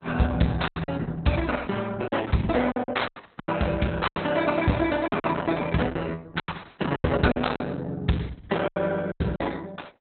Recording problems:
lossy codec; Opus, log-spectral distance 6 dB, nothing above 4.1 kHz
lost packets; 10% of the sound replaced, filled with silence

